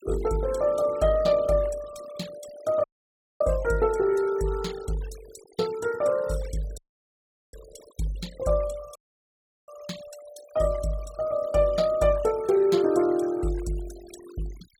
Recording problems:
noise reduction artefacts; signal-to-artefact ratio 21 dB
dropout; at 3 s for 0.5 s, at 7 s for 1 s and at 9 s for 0.5 s

